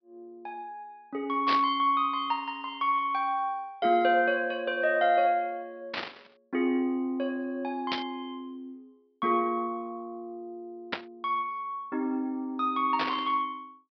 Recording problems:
low-pass filter; nothing above 5.5 kHz
static burst; 5 times, first at 1.5 s; peak +2 dB vs average level

